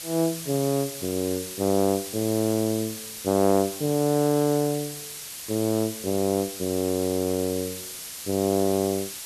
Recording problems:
hiss; slope +2 dB per octave, SNR 9 dB

